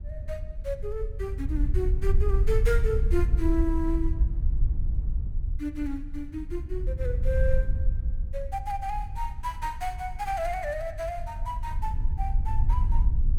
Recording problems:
wind on the microphone; below 64 Hz, SNR -3 dB

